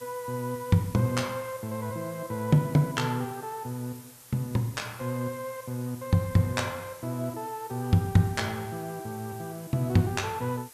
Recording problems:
hiss; slope 0 dB per octave, SNR 19 dB

